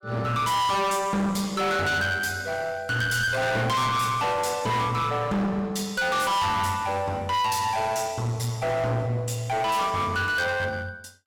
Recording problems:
distortion; hard clipping, uneven, signal-to-distortion ratio 5 dB

